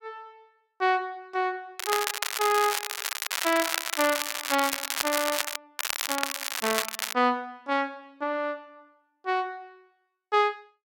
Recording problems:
crackling; from 2 to 5.5 s and from 6 to 7 s; loose cable, SNR 1 dB

